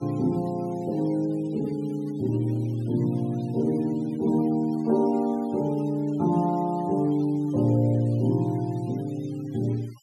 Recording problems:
noise reduction artefacts; signal-to-artefact ratio 25 dB

